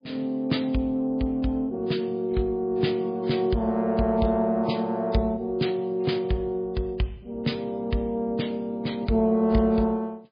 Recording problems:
codec artefacts; MP3, log-spectral distance 2 dB, nothing above 5 kHz

